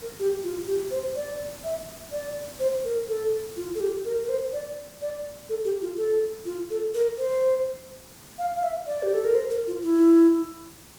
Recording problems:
hiss; SNR 18 dB

